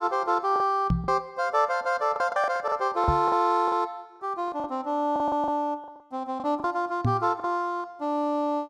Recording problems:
lost packets; 10% of the sound replaced, filled with the last packet
microphone bump; at 1 s, at 3 s and at 7 s; peak +5 dB vs average level

